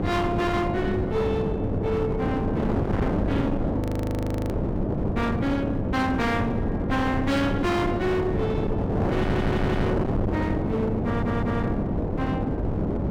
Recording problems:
distorted audio; hard clipping, signal-to-distortion ratio 8 dB
electrical hum; 50 Hz, harmonics up to 700 Hz, SNR 8 dB
wind on the microphone; below 440 Hz, SNR 0 dB
audio freezing; at 4 s for 0.5 s
audio stuttering; at 9 s and at 11 s

